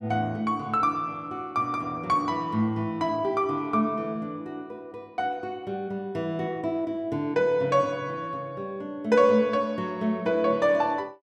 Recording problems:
none

